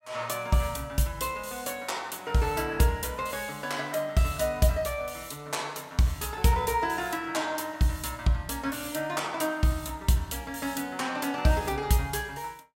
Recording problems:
none

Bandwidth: 16.5 kHz